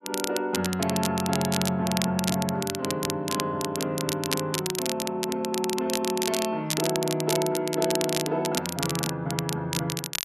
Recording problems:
crackling; vinyl, SNR 4 dB

